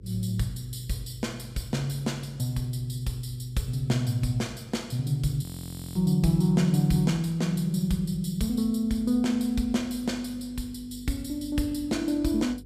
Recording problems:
electrical hum; 50 Hz, harmonics up to 500 Hz, SNR 23 dB
audio freezing; at 5.5 s for 0.5 s

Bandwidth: 14.5 kHz